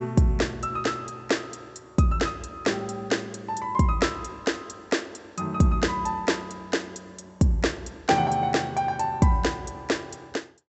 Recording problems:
treble missing; nothing above 7.9 kHz

